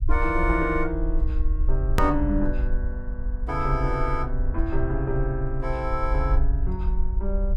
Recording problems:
low-frequency rumble; below 54 Hz, strongest tone 20 Hz, SNR 1 dB
hard cut with a click; at 2 s

